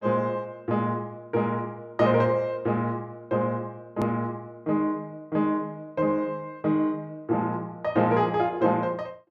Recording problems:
click at an edit; at 4 s

